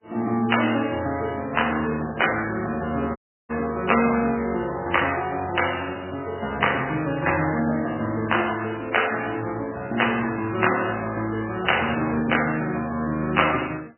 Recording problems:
lossy compression; MP3, log-spectral distance 13 dB, nothing above 3 kHz
dropout; at 3 s

